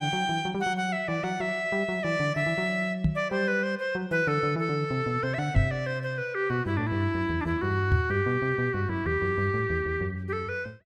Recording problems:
microphone thump; at 3 s, at 5.5 s and at 8 s; peak +7 dB vs average level

